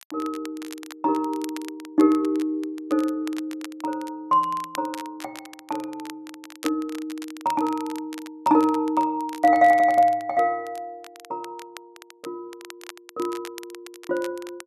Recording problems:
crackle; vinyl, SNR 19 dB

